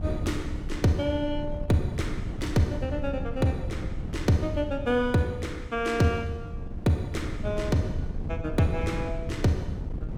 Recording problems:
wind noise; below 150 Hz, SNR 7 dB

